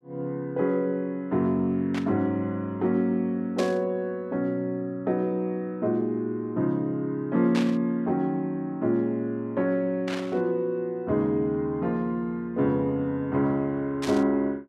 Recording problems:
static burst; 5 times, first at 2 s; peak -3 dB vs average level

